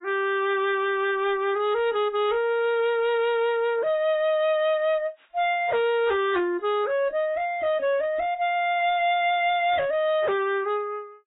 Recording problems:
codec artefacts; AAC, log-spectral distance 2 dB, nothing above 3.6 kHz
distorted audio; hard clipping, uneven, signal-to-distortion ratio 11 dB

